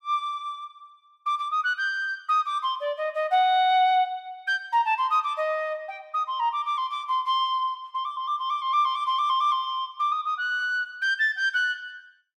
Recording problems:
none

